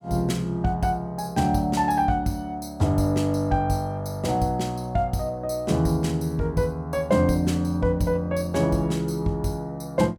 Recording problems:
none

